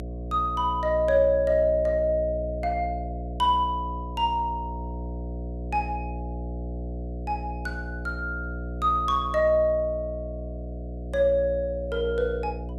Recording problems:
hum; 60 Hz, harmonics up to 720 Hz, SNR 9 dB

